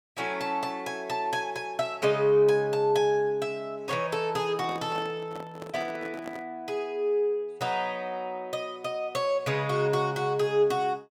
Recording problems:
handling noise; from 4.5 to 6.5 s; peak -9 dB vs average level

